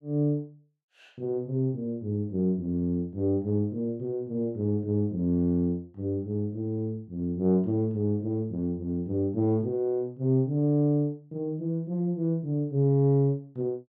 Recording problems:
none

